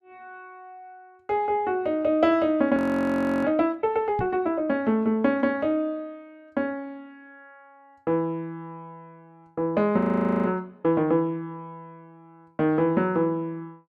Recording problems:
frozen audio; at 3 s for 0.5 s and at 10 s
microphone bump; at 4 s; peak -3 dB vs average level

